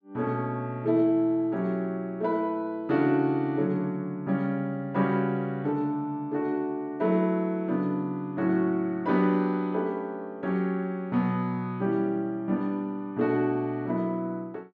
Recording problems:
none

